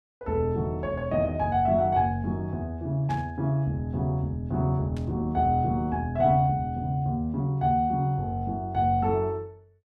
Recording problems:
static burst; at 3 s and at 5 s; peak -14 dB vs average level

